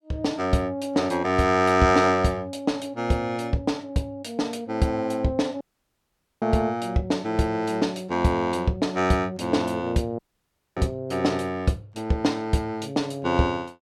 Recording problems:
dropout; at 5.5 s for 1 s and at 10 s for 0.5 s

